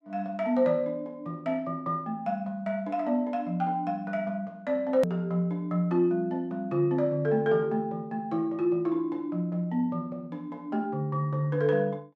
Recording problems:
edit click; at 5 s

